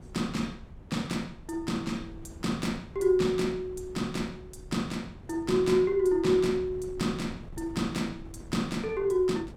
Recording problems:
wind on the microphone; below 180 Hz, SNR 18 dB

